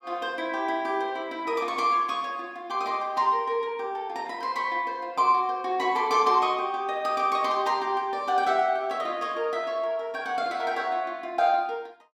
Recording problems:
none

